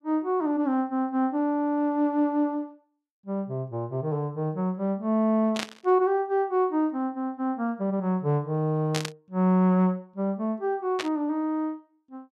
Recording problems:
burst of static; at 5.5 s, at 9 s and at 11 s; peak 0 dB vs average level

